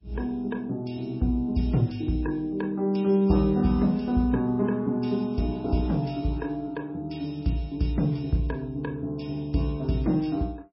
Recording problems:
lossy codec; MP3, log-spectral distance 2 dB, nothing above 5.3 kHz

